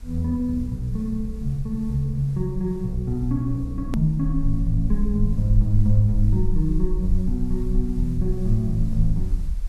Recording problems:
hiss; slope -3 dB per octave, SNR 30 dB
low-frequency rumble; below 42 Hz, strongest tone 20 Hz, SNR 6 dB
hard cut with a click; at 4 s

